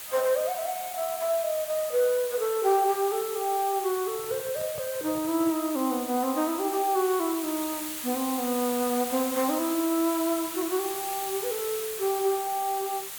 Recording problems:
hiss; SNR 7 dB
microphone handling noise; from 4 to 5.5 s; peak -11 dB vs average level

